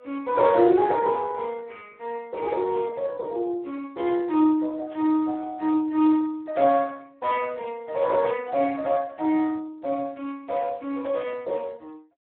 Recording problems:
telephone audio; 260 Hz to 2.8 kHz, Speex
static burst; 4 times, first at 2.5 s; peak -19 dB vs average level

